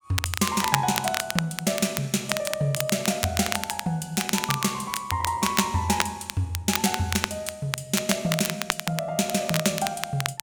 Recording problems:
crackle; vinyl, SNR 4 dB

